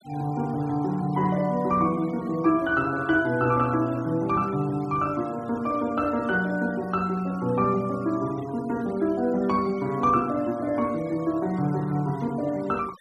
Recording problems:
denoising artefacts; signal-to-artefact ratio 23 dB

